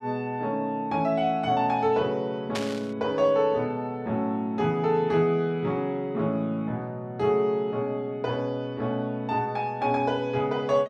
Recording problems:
burst of static; at 2.5 s; peak -2 dB vs average level

